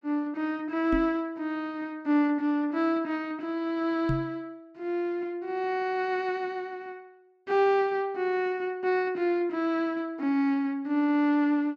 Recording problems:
knock on the microphone; at 1 s and at 4 s; peak +1 dB vs average level

